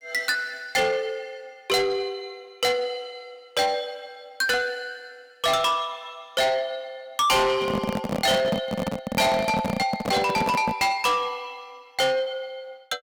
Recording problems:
distortion; soft clipping, signal-to-distortion ratio 6 dB
microphone handling noise; from 7.5 to 11 s; peak +3 dB vs average level

